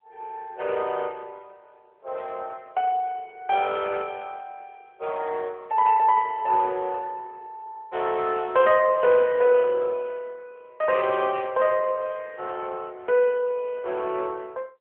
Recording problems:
telephone audio; 320 Hz to 3.4 kHz, AMR-NB

